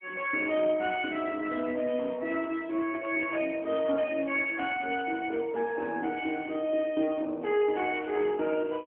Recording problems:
telephone audio; 240 Hz to 3.3 kHz, AMR-NB
burst of static; at 3 s, at 4.5 s and at 7.5 s; peak -10 dB vs average level

